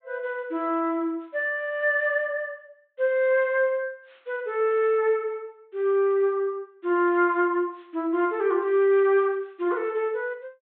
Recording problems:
low-pass filter; nothing above 4 kHz

